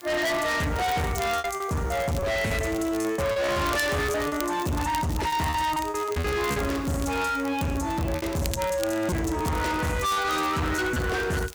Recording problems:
distortion; hard clipping, signal-to-distortion ratio 6 dB
hiss; SNR 26 dB
crackle; vinyl, SNR 15 dB
packet loss; 9% of the sound replaced, filled with repeated pitch periods

